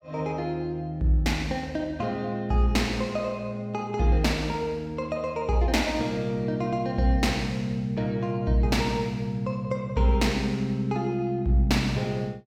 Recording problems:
none

